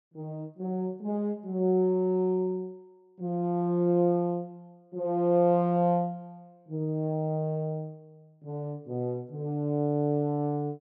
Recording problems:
none

